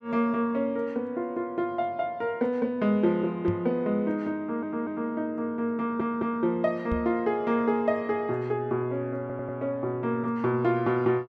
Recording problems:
microphone thump; at 3.5 s and at 7 s; peak +1 dB vs average level
stutter; at 4.5 s, at 6 s and at 9 s

